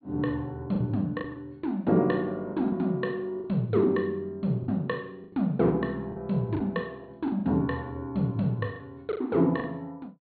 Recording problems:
treble cut off; nothing above 4.4 kHz
packet loss; 8% of the sound replaced, filled with the last packet

